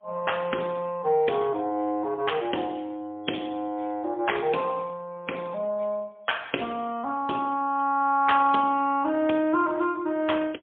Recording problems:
phone line; 260 Hz to 3.4 kHz, AMR-NB, then MP3

